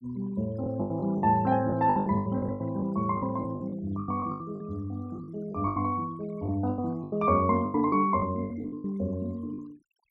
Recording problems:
denoising artefacts; signal-to-artefact ratio 26 dB
packet loss; 16% of the sound replaced, filled with the last packet

